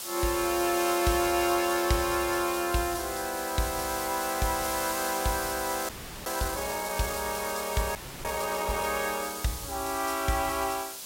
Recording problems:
background hiss; SNR 6 dB
audio freezing; at 6 s and at 8 s

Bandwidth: 16 kHz